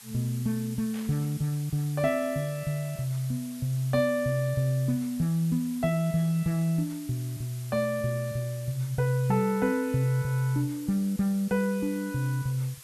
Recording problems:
hiss; slope +2 dB per octave, SNR 18 dB
burst of static; at 1 s; peak -15 dB vs average level

